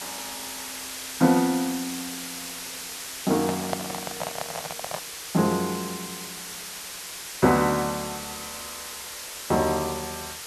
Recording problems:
background hiss; slope +1 dB per octave, SNR 8 dB
handling noise; from 3.5 to 5 s; peak +1 dB vs average level

